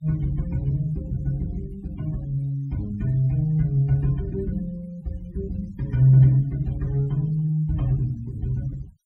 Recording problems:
noise reduction artefacts; signal-to-artefact ratio 27 dB

